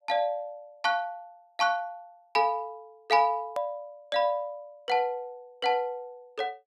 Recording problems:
hard cut with a click; at 3.5 s

